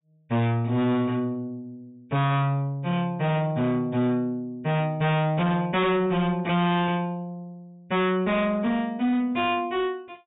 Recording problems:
treble cut off; nothing above 4 kHz
distorted audio; hard clipping, signal-to-distortion ratio 8 dB

